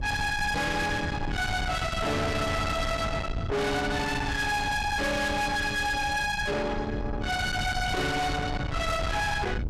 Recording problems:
distortion; soft clipping, signal-to-distortion ratio 7 dB
wind noise; below 1.3 kHz, SNR 5 dB

